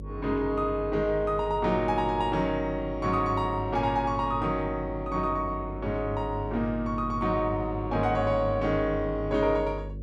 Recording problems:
electrical hum; 50 Hz, harmonics up to 550 Hz, SNR 11 dB

